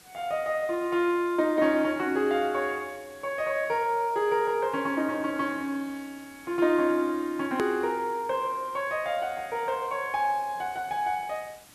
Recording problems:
hiss; slope -1 dB per octave, SNR 24 dB
edit click; at 7.5 s

